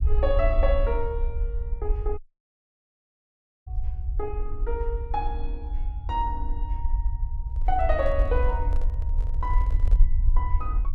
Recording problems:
rumble; below 56 Hz, SNR -2 dB
dropout; at 2 s for 1.5 s
microphone handling noise; from 7.5 to 10 s; peak -11 dB vs average level

